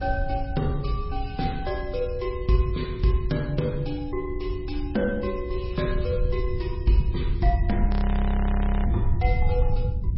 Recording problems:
codec artefacts; MP3, log-spectral distance 2 dB, nothing above 5.5 kHz
wind noise; below 80 Hz, SNR 1 dB
frozen audio; at 8 s for 1 s

